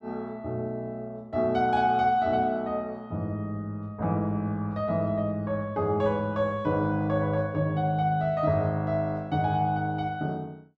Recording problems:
none

